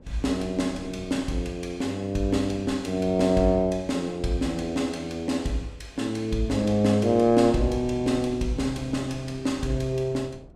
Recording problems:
wind noise; below 290 Hz, SNR 19 dB

